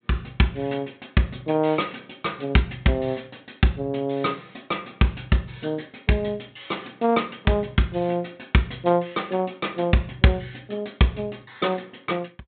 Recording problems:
treble cut off; nothing above 4 kHz

